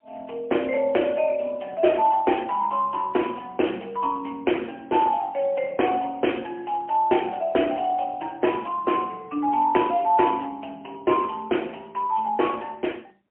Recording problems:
phone line; 260 Hz to 3.1 kHz, AMR-NB, then MP3

